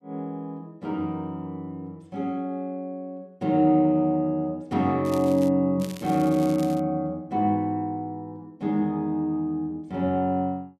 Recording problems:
crackling; at 5 s and from 6 to 7 s; loose cable, SNR 20 dB

